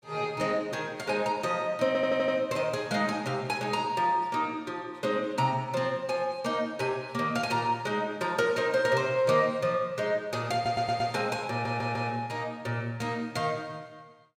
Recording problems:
stutter; at 2 s, at 11 s and at 12 s

